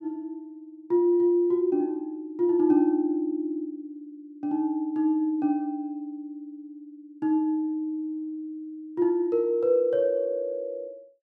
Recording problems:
none

